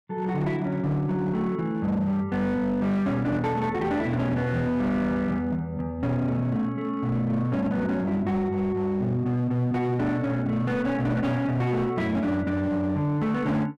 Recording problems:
distortion; hard clipping, signal-to-distortion ratio 11 dB

